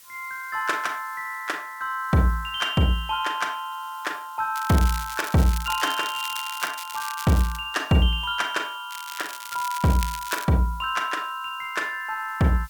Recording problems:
hiss; slope +2 dB per octave, SNR 24 dB
crackling; from 4.5 to 7.5 s and from 9 to 10 s; loose cable, SNR 10 dB

